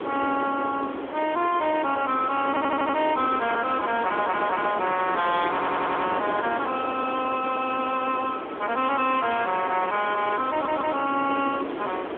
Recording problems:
phone line; 220 Hz to 3.4 kHz, AMR-NB
distorted audio; soft clipping, signal-to-distortion ratio 9 dB
hiss; SNR 8 dB
wind on the microphone; below 1.7 kHz, SNR 14 dB
stutter; 4 times, first at 2.5 s

